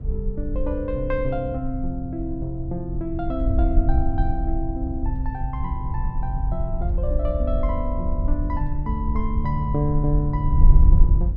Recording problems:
wind on the microphone; below 62 Hz, SNR -3 dB

